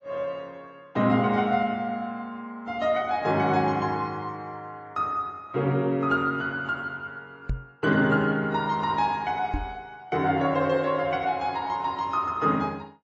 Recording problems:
codec artefacts; AAC, log-spectral distance 2 dB, nothing above 6.5 kHz
knock on the microphone; at 7.5 s and at 9.5 s; peak 0 dB vs average level

